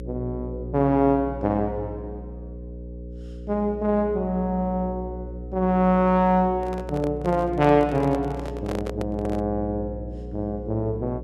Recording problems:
hum; 60 Hz, harmonics up to 540 Hz, SNR 12 dB
microphone handling noise; from 6.5 to 9.5 s; peak -4 dB vs average level

